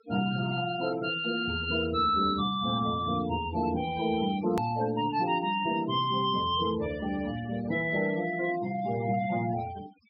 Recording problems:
low-pass filter; nothing above 5.5 kHz
denoising artefacts; signal-to-artefact ratio 15 dB
hard cut with a click; at 4.5 s

